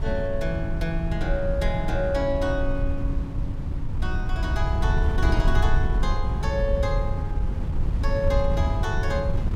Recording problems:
wind noise; below 90 Hz, SNR -2 dB

